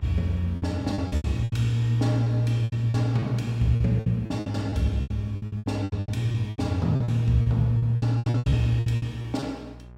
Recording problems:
hum; 60 Hz, harmonics up to 1.2 kHz, SNR 21 dB
lost packets; 19% of the sound replaced, filled with repeated pitch periods

